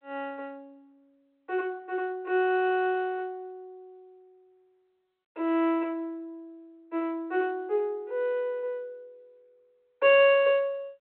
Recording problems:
telephone audio; 280 Hz to 3.3 kHz, G.726

